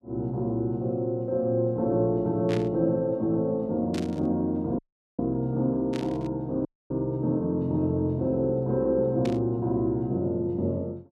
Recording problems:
burst of static; 4 times, first at 2.5 s; peak -7 dB vs average level
audio cutting out; at 5 s and at 6.5 s

